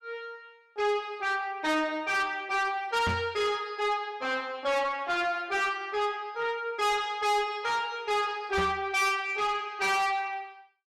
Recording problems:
distortion; soft clipping, signal-to-distortion ratio 7 dB
microphone thump; at 3 s and at 8.5 s; peak +1 dB vs average level

